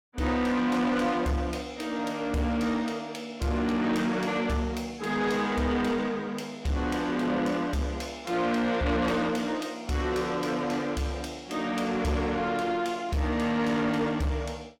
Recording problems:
distorted audio; soft clipping, signal-to-distortion ratio 11 dB

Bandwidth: 17 kHz